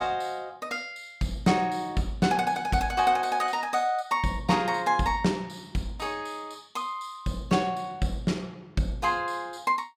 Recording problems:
none

